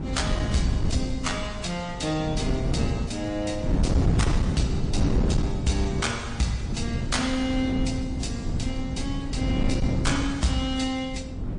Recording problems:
lossy codec; MP3, then AAC, log-spectral distance 3 dB, nothing above 9.8 kHz
distortion; hard clipping, signal-to-distortion ratio 12 dB
wind on the microphone; below 210 Hz, SNR 0 dB

